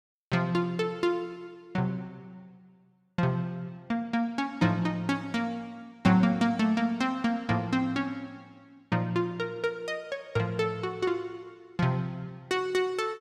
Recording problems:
none

